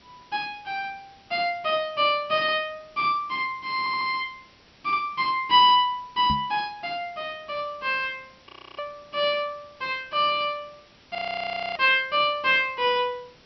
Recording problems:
treble missing; nothing above 5.8 kHz
background hiss; slope -2 dB per octave, SNR 29 dB
audio stuttering; at 4 s
microphone bump; at 6.5 s; peak -2 dB vs average level
audio freezing; at 8.5 s and at 11 s for 0.5 s

